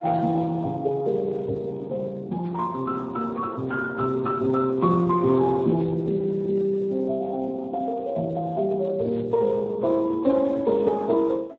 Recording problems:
lossy codec; MP3, then Speex, log-spectral distance 2 dB, nothing above 7.3 kHz

